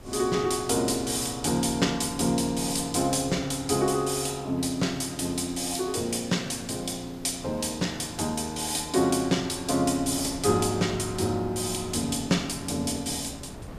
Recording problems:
background hiss; slope -3 dB per octave, SNR 26 dB
wind on the microphone; below 420 Hz, SNR 19 dB

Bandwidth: 14.5 kHz